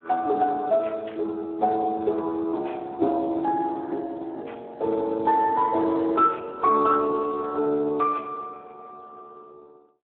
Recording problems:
telephone audio; 280 Hz to 2.2 kHz, Speex
burst of static; at 1 s; peak -16 dB vs average level

